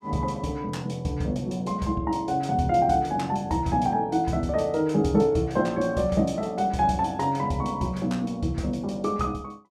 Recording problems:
none

